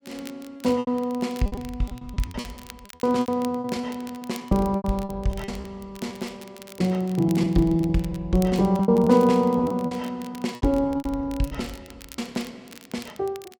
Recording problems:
crackle; vinyl, SNR 22 dB
lost packets; 14% of the sound replaced, filled with repeated pitch periods

